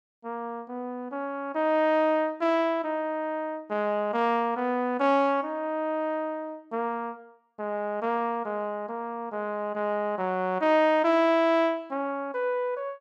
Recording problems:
none

